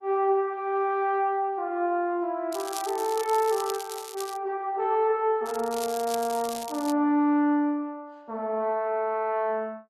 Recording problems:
lossy compression; Opus, log-spectral distance 2 dB
crackling; from 2.5 to 4.5 s and from 5.5 to 7 s; loose cable, SNR 13 dB

